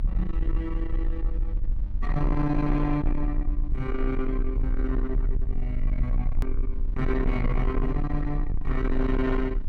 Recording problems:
distorted audio; soft clipping, signal-to-distortion ratio 10 dB
mains hum; 50 Hz, harmonics up to 900 Hz, SNR 15 dB
rumble; below 46 Hz, strongest tone 30 Hz, SNR 1 dB
click at an edit; at 6.5 s

